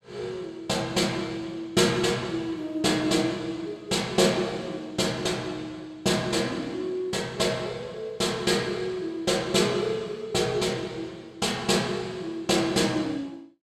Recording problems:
none

